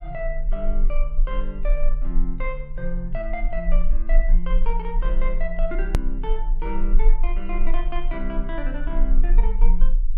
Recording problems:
rumble; below 30 Hz, strongest tone 20 Hz, SNR -6 dB
edit click; at 6 s

